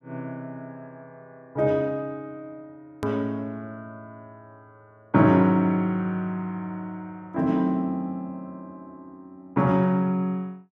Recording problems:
click at an edit; at 3 s

